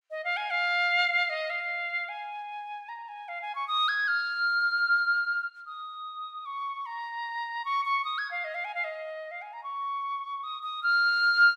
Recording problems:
none

